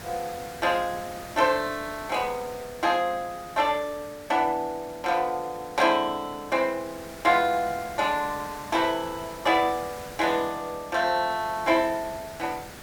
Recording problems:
hiss; SNR 16 dB

